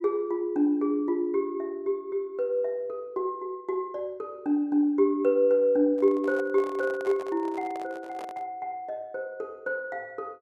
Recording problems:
handling noise; from 6 to 8.5 s; peak -10 dB vs average level

